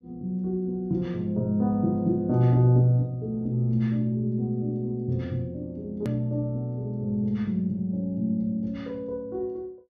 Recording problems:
low-pass filter; nothing above 6.6 kHz
click at an edit; at 6 s

